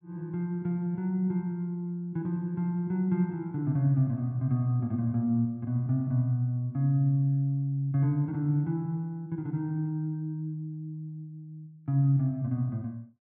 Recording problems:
none

